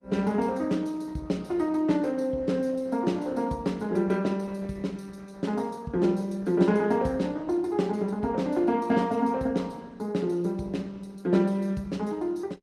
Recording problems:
lossy compression; Opus, log-spectral distance 2 dB, nothing above 14.7 kHz

